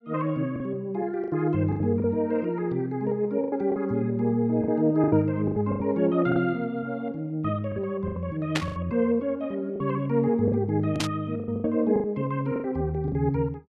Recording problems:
packet loss; 10% of the sound replaced, filled with the last packet
static burst; at 8.5 s and at 11 s; peak +3 dB vs average level

